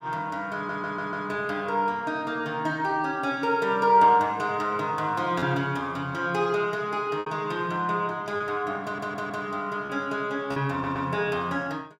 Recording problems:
packet loss; 1.9% of the sound replaced, filled with repeated pitch periods
audio stuttering; at 0.5 s, at 9 s and at 11 s

